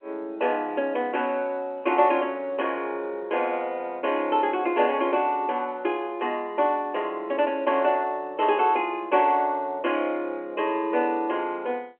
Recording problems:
phone line; 260 Hz to 3.2 kHz, G.711

